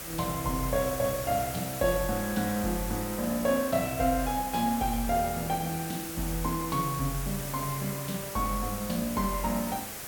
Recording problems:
hiss; slope -2 dB per octave, SNR 7 dB

